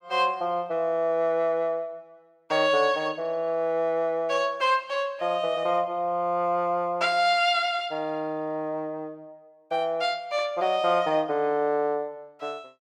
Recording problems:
none

